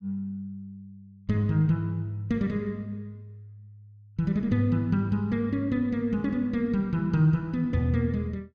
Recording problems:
none

